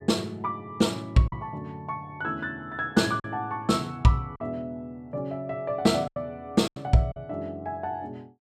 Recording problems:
lost packets; 4% of the sound replaced, filled with silence

